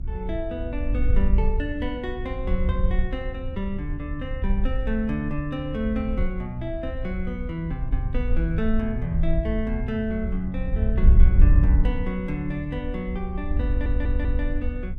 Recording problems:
hum; 60 Hz, harmonics up to 720 Hz, SNR 23 dB
rumble; below 86 Hz, SNR 10 dB
wind on the microphone; below 64 Hz, SNR -3 dB
audio stuttering; at 14 s

